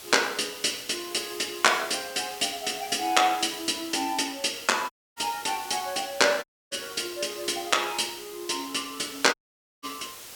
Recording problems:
hiss; slope 0 dB per octave, SNR 14 dB
dropout; at 5 s, at 6.5 s and at 9.5 s

